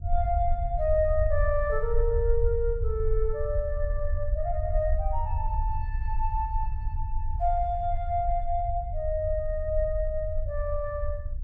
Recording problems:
rumble; below 64 Hz, SNR 2 dB

